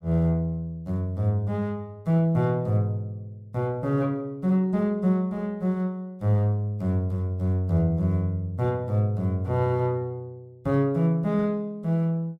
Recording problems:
none

